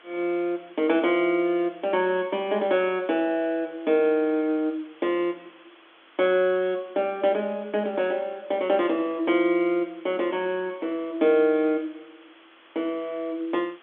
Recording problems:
telephone audio; 240 Hz to 3.5 kHz, G.711
hiss; SNR 27 dB

